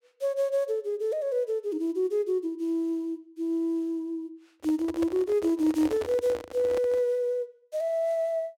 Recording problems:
handling noise; from 4.5 to 7 s; peak -4 dB vs average level

